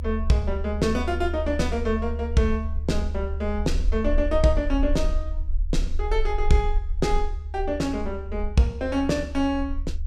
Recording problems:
rumble; below 72 Hz, SNR 4 dB

